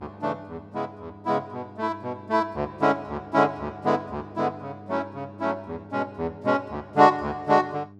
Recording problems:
hum; 50 Hz, harmonics up to 800 Hz, SNR 20 dB

